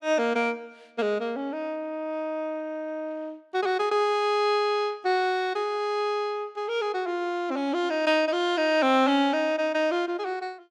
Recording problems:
none

